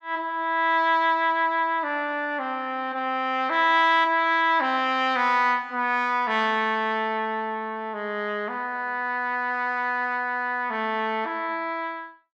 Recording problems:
none

